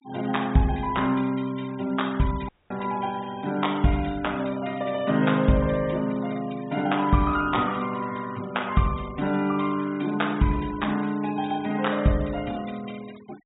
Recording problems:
treble cut off; nothing above 4 kHz
denoising artefacts; signal-to-artefact ratio 20 dB
dropout; at 2.5 s

